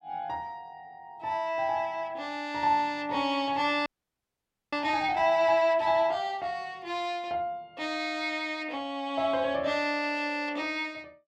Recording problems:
audio freezing; at 4 s for 1 s

